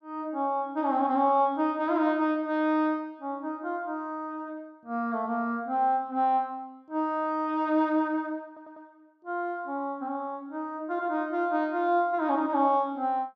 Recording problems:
stutter; at 8.5 s

